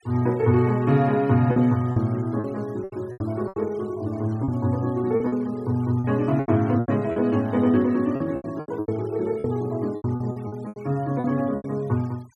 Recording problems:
noise reduction artefacts; signal-to-artefact ratio 27 dB
lost packets; 12% of the sound replaced, filled with repeated pitch periods

